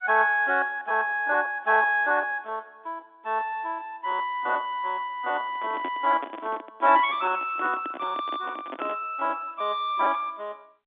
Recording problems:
phone line; 240 Hz to 3.6 kHz, G.711
lost packets; 15% of the sound replaced, filled with repeated pitch periods
microphone handling noise; from 5.5 to 9 s; peak -5 dB vs average level

